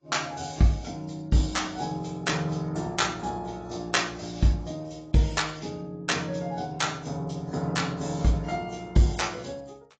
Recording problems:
codec artefacts; AAC, log-spectral distance 5 dB, nothing above 7.6 kHz

